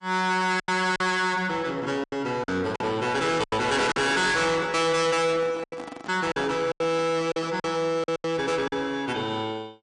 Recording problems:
lossy compression; MP3, log-spectral distance 2 dB, nothing above 8.5 kHz
distortion; soft clipping, signal-to-distortion ratio 7 dB
packet loss; 9% of the sound replaced, filled with silence
microphone handling noise; from 4 to 7.5 s; peak -9 dB vs average level

